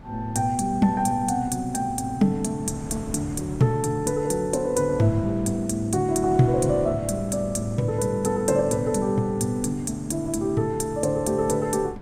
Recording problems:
wind on the microphone; below 240 Hz, SNR 16 dB

